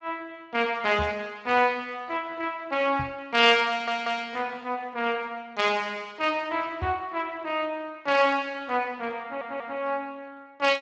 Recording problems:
codec artefacts; Speex, log-spectral distance 4 dB, nothing above 7.6 kHz
knock on the microphone; at 1 s, at 3 s and at 7 s; peak -3 dB vs average level
stutter; at 3.5 s and at 9 s

